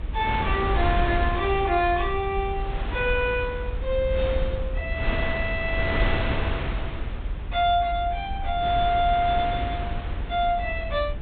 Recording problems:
treble cut off; nothing above 4 kHz
low-frequency rumble; below 76 Hz, SNR 7 dB
wind on the microphone; below 1.1 kHz, SNR 6 dB

